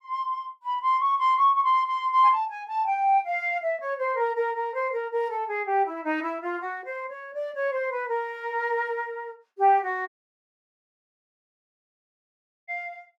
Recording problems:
dropout; at 10 s for 2.5 s

